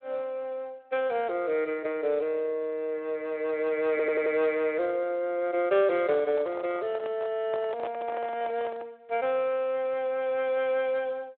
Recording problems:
phone line; 320 Hz to 3.9 kHz, Speex
stutter; at 4 s
handling noise; from 6 to 9 s; peak -6 dB vs average level

